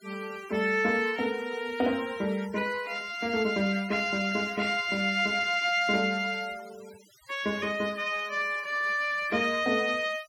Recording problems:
denoising artefacts; signal-to-artefact ratio 20 dB

